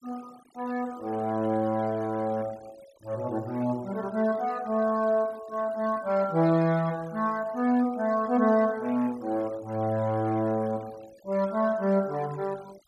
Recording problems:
noise reduction artefacts; signal-to-artefact ratio 22 dB

